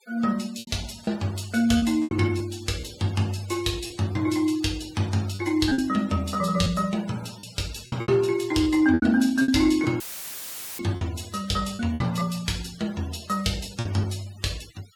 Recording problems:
denoising artefacts; signal-to-artefact ratio 20 dB
packet loss; 7% of the sound replaced, filled with repeated pitch periods
dropout; at 10 s for 1 s; filled with static

